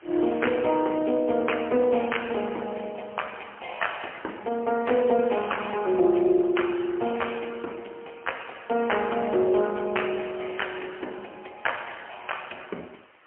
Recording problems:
telephone audio; 260 Hz to 3.1 kHz, AMR-NB, then MP3
background hiss; SNR 28 dB

